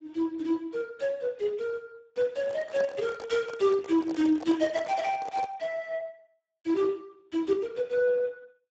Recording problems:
codec artefacts; Speex, log-spectral distance 3 dB, nothing above 7.3 kHz
handling noise; from 2.5 to 5.5 s; peak -2 dB vs average level

